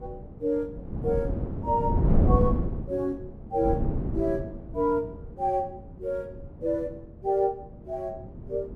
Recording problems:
wind on the microphone; below 220 Hz, SNR -1 dB

